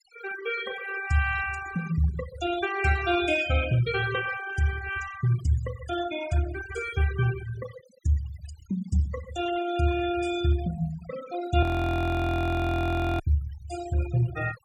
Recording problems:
noise reduction artefacts; signal-to-artefact ratio 13 dB
frozen audio; at 12 s for 1.5 s

